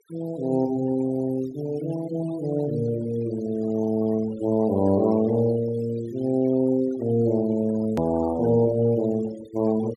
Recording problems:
noise reduction artefacts; signal-to-artefact ratio 19 dB
hard cut with a click; at 8 s

